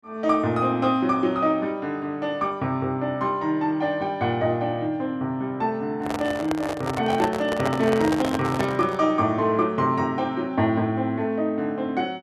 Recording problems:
handling noise; from 6 to 9 s; peak 0 dB vs average level

